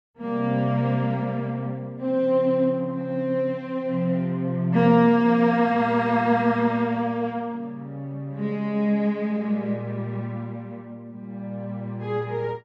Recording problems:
none

